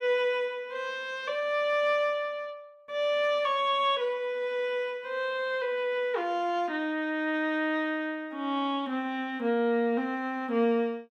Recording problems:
none

